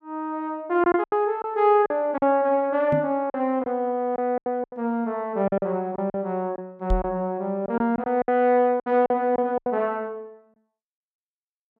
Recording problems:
packet loss; 10% of the sound replaced, filled with silence
microphone thump; at 3 s and at 7 s; peak +2 dB vs average level

